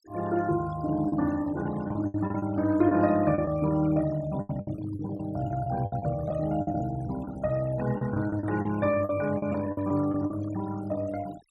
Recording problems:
noise reduction artefacts; signal-to-artefact ratio 16 dB
lost packets; 10% of the sound replaced, filled with the last packet

